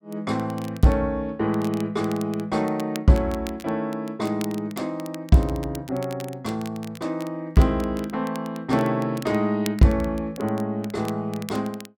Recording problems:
crackling; vinyl, SNR 19 dB

